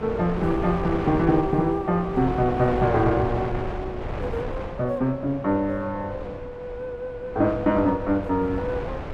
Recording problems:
wind noise; below 670 Hz, SNR 8 dB

